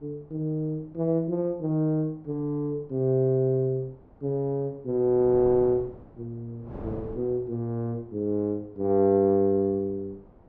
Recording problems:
wind on the microphone; below 490 Hz, SNR 21 dB

